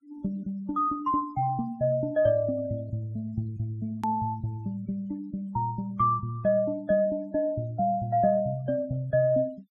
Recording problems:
denoising artefacts; signal-to-artefact ratio 28 dB
click at an edit; at 4 s

